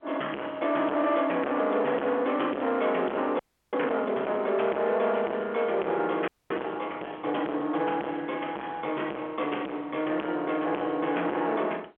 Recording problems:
telephone audio; 300 Hz to 3.5 kHz, G.711
distorted audio; soft clipping, signal-to-distortion ratio 5 dB
audio freezing; at 3.5 s and at 6.5 s

